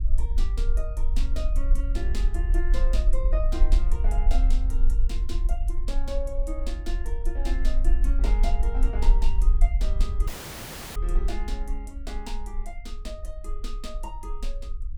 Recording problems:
low-frequency rumble; below 44 Hz, strongest tone 20 Hz, SNR -11 dB
audio cutting out; at 10 s for 0.5 s

